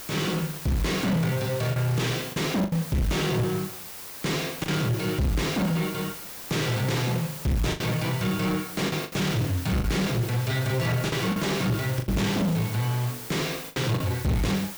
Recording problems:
distorted audio; soft clipping, signal-to-distortion ratio 7 dB
background hiss; slope -3 dB per octave, SNR 9 dB
lost packets; 5% of the sound replaced, filled with the last packet

